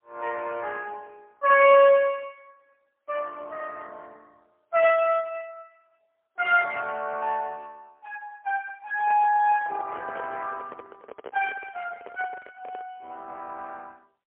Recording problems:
phone line; 370 Hz to 3.3 kHz, AMR-NB, then MP3
handling noise; from 9 to 13 s; peak -9 dB vs average level

